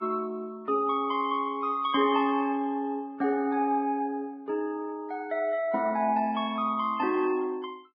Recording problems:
codec artefacts; Vorbis, log-spectral distance 2 dB, nothing above 4.8 kHz

